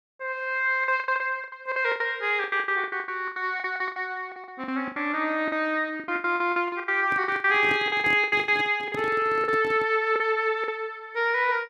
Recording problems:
lost packets; 18% of the sound replaced, filled with the last packet
handling noise; from 7 to 10 s; peak -5 dB vs average level

